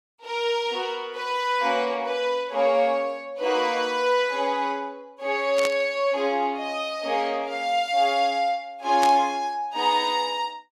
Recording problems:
burst of static; at 5.5 s and at 9 s; peak -1 dB vs average level

